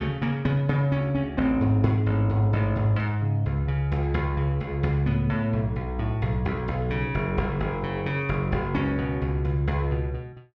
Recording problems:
none

